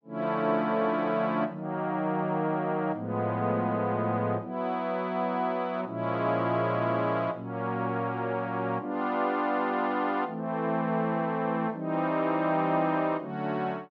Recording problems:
none

